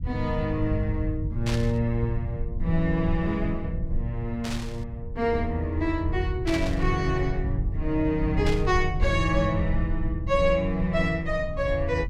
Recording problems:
rumble; below 94 Hz, SNR 4 dB
burst of static; 4 times, first at 1.5 s; peak -2 dB vs average level

